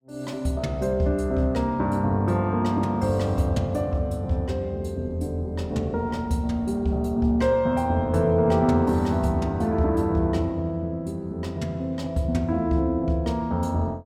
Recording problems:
none

